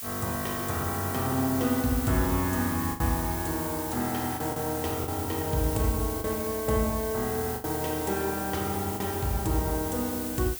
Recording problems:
background hiss; slope +3 dB per octave, SNR 5 dB
packet loss; 3% of the sound replaced, filled with the last packet

